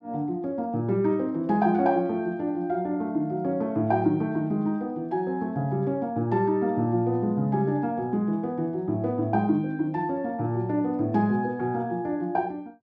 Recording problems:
none

